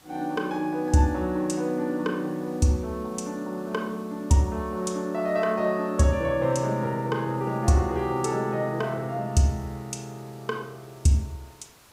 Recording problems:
background hiss; slope -2 dB per octave, SNR 27 dB

